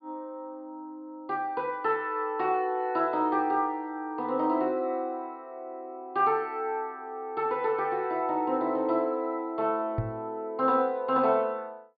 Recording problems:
treble cut off; nothing above 4.9 kHz
knock on the microphone; at 10 s; peak +2 dB vs average level

